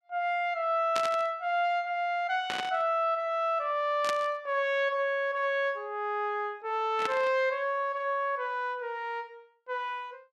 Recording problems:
static burst; 4 times, first at 1 s; peak 0 dB vs average level

